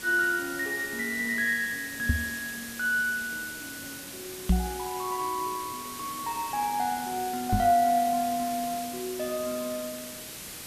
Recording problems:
hiss; SNR 9 dB
microphone bump; at 2 s, at 4.5 s and at 7.5 s; peak +9 dB vs average level

